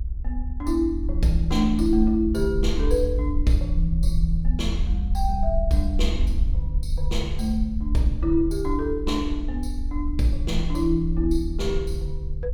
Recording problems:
low-frequency rumble; below 66 Hz, SNR 2 dB

